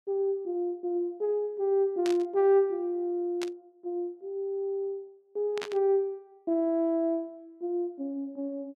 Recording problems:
burst of static; at 2 s, at 3.5 s and at 5.5 s; peak -4 dB vs average level

